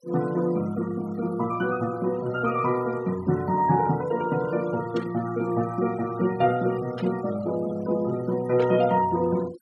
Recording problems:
noise reduction artefacts; signal-to-artefact ratio 19 dB
burst of static; at 5 s, at 7 s and at 8.5 s; peak -11 dB vs average level

